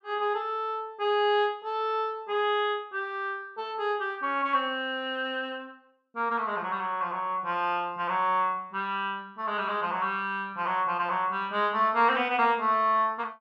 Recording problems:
none

